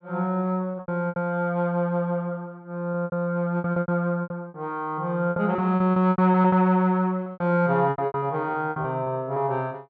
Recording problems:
packet loss; 14% of the sound replaced, filled with repeated pitch periods

